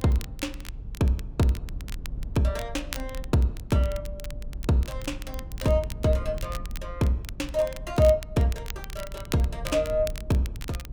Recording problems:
low-frequency rumble; below 74 Hz, SNR 12 dB
crackle; vinyl, SNR 17 dB

